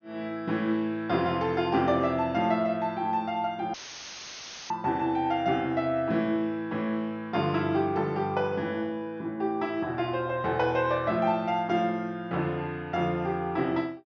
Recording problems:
treble missing; nothing above 6.6 kHz
dropout; at 3.5 s for 1 s; filled with static

